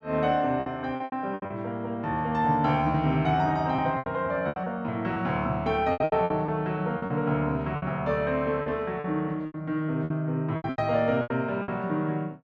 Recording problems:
lost packets; 12% of the sound replaced, filled with repeated pitch periods

